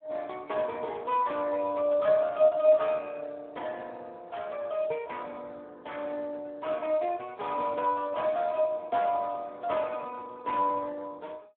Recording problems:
phone line; 260 Hz to 3 kHz, Speex

